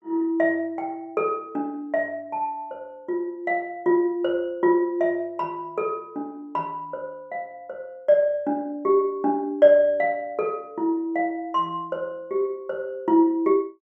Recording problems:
none

